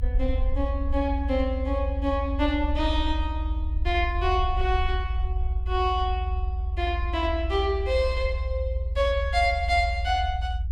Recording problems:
low-frequency rumble; below 74 Hz, strongest tone 54 Hz, SNR 2 dB

